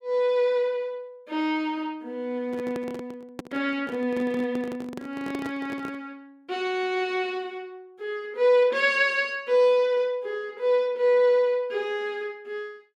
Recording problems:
microphone handling noise; from 2.5 to 6 s; peak -5 dB vs average level

